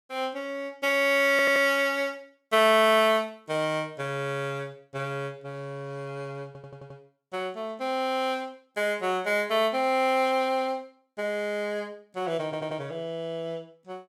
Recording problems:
stutter; at 1.5 s, at 6.5 s and at 12 s

